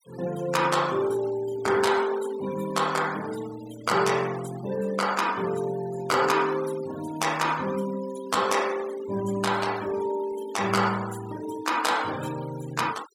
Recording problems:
denoising artefacts; signal-to-artefact ratio 16 dB

